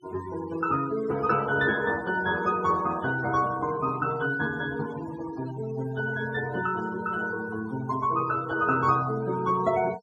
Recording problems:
noise reduction artefacts; signal-to-artefact ratio 15 dB

